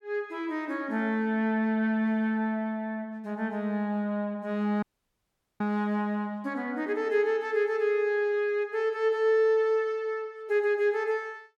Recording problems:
audio cutting out; at 5 s for 1 s

